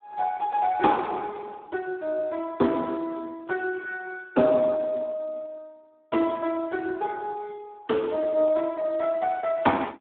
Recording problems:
telephone audio; 240 Hz to 3.6 kHz, Speex

